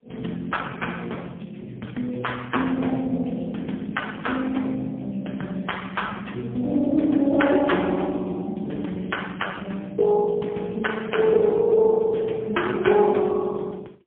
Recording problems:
phone line; 220 Hz to 3.4 kHz, AMR-NB, then MP3

